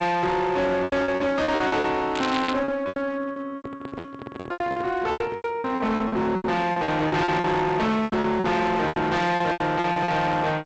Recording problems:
codec artefacts; G.722, log-spectral distance 2 dB, nothing above 7.8 kHz
distortion; hard clipping, uneven, signal-to-distortion ratio 7 dB
packet loss; 19% of the sound replaced, filled with repeated pitch periods
crackling; at 2 s; loose cable, SNR 10 dB
microphone handling noise; from 3.5 to 5.5 s; peak -7 dB vs average level

